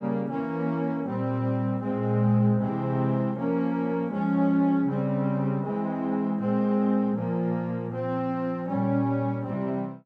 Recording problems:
none

